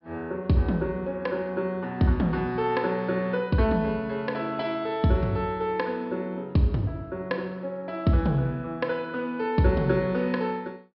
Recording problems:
treble cut off; nothing above 5.3 kHz

